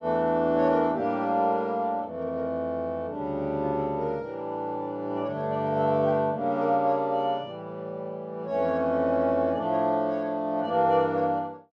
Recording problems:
none

